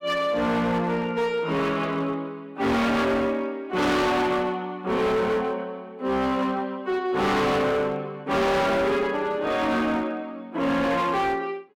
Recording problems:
distortion; hard clipping, uneven, signal-to-distortion ratio 6 dB

